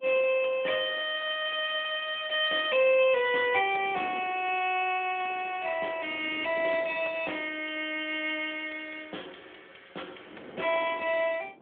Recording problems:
telephone audio; 280 Hz to 3.4 kHz, AMR-NB
wind noise; below 600 Hz, SNR 19 dB

